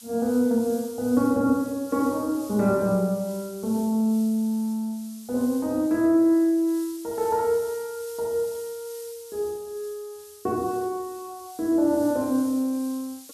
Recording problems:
background hiss; SNR 19 dB

